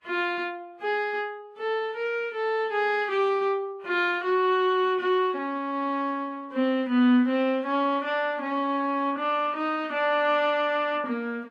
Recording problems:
codec artefacts; Vorbis, log-spectral distance 2 dB

